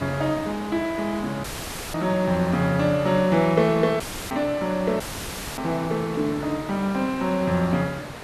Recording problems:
background hiss; slope -5 dB per octave, SNR 13 dB
audio cutting out; at 1.5 s for 0.5 s, at 4 s and at 5 s for 0.5 s; filled with static

